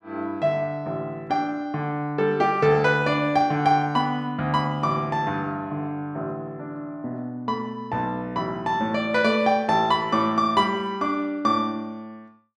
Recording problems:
none

